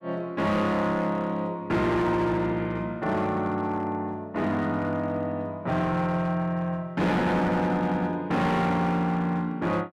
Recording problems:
distortion; hard clipping, signal-to-distortion ratio 11 dB

